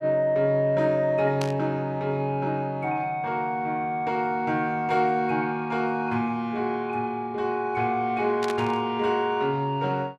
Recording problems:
burst of static; at 1.5 s and at 8.5 s; peak -4 dB vs average level

